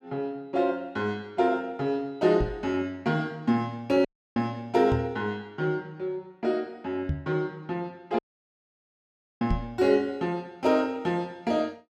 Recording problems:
microphone thump; 4 times, first at 2.5 s; peak +3 dB vs average level
dropout; at 4 s and at 8 s for 1 s

